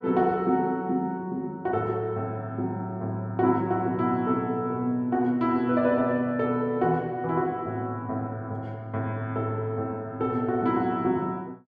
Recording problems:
none

